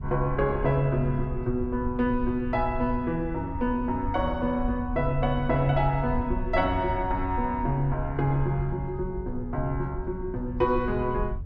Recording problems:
rumble; below 72 Hz, SNR 9 dB

